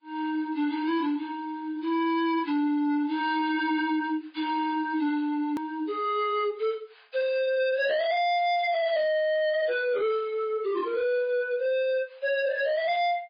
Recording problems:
lossy codec; MP3, log-spectral distance 2 dB
distortion; hard clipping, signal-to-distortion ratio 6 dB
click at an edit; at 5.5 s

